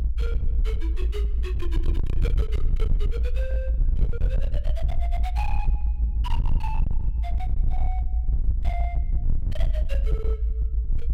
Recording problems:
distortion; hard clipping, uneven, signal-to-distortion ratio 7 dB
low-frequency rumble; below 58 Hz, SNR -12 dB
wind noise; below 100 Hz, SNR 7 dB

